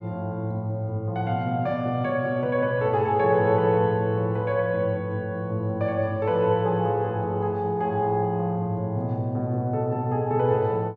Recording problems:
none

